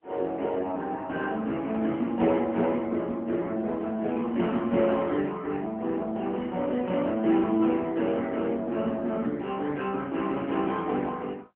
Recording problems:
phone line; 170 Hz to 3.4 kHz, AMR-NB

